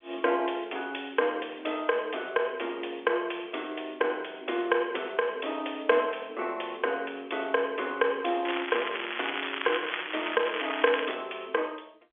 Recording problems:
telephone audio; 300 Hz to 3.4 kHz, G.711
crackling; from 8.5 to 11 s; loose cable, SNR 4 dB

